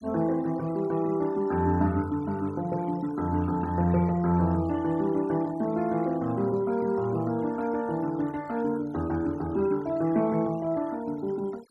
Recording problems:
denoising artefacts; signal-to-artefact ratio 22 dB

